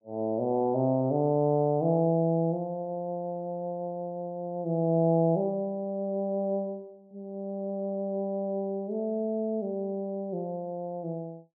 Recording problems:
none

